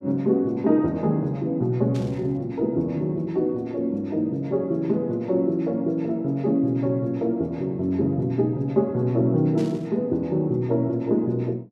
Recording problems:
static burst; at 2 s and at 9.5 s; peak -14 dB vs average level

